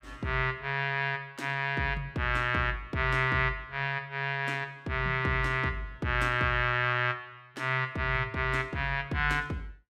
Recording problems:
none

